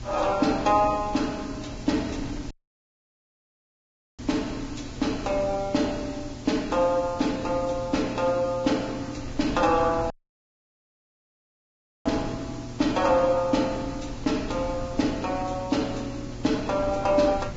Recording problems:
lossy codec; Vorbis, log-spectral distance 5 dB, nothing above 7.3 kHz
hum; 60 Hz, harmonics up to 840 Hz, SNR 16 dB
hiss; slope +2 dB per octave, SNR 22 dB
wind noise; below 180 Hz, SNR 16 dB
audio cutting out; at 2.5 s for 1.5 s and at 10 s for 2 s

